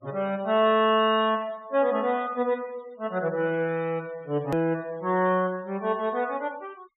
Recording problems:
treble cut off; nothing above 4 kHz
noise reduction artefacts; signal-to-artefact ratio 27 dB
hard cut with a click; at 4.5 s

